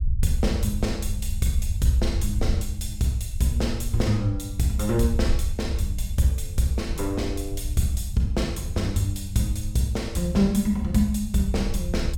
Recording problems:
rumble; below 78 Hz, SNR 5 dB

